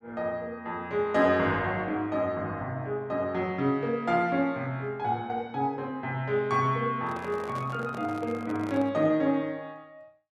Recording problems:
handling noise; from 7 to 9 s; peak -8 dB vs average level

